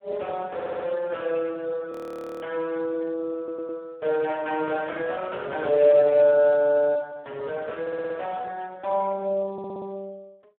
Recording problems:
telephone audio; 260 Hz to 2.3 kHz, Speex
stutter; 4 times, first at 0.5 s
audio freezing; at 2 s for 0.5 s

